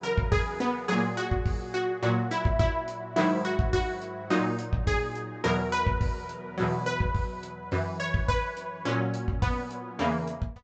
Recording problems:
treble missing; nothing above 8 kHz

